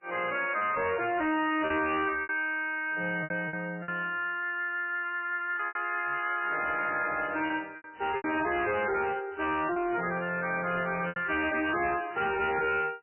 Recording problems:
lossy codec; MP3, log-spectral distance 5 dB, nothing above 2.5 kHz
distorted audio; soft clipping, signal-to-distortion ratio 6 dB
packet loss; 6% of the sound replaced, filled with repeated pitch periods

